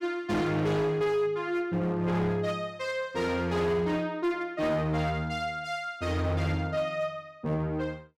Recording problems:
distorted audio; hard clipping, signal-to-distortion ratio 11 dB

